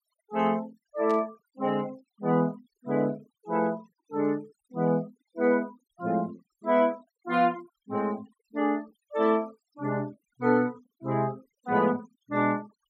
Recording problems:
denoising artefacts; signal-to-artefact ratio 25 dB
burst of static; at 1 s; peak -14 dB vs average level

